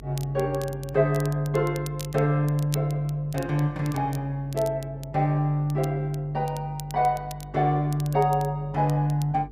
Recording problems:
electrical hum; 50 Hz, harmonics up to 450 Hz, SNR 20 dB
crackle; vinyl, SNR 20 dB

